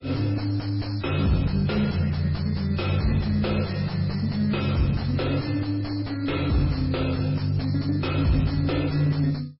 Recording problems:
lossy compression; MP3, log-spectral distance 5 dB, nothing above 5.3 kHz
distortion; soft clipping, signal-to-distortion ratio 5 dB

